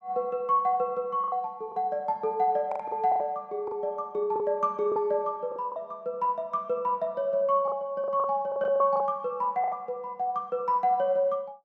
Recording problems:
packet loss; 8% of the sound replaced, filled with the last packet

